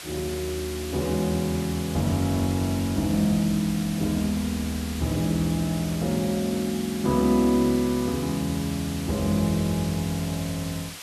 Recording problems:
hiss; slope +1 dB per octave, SNR 11 dB

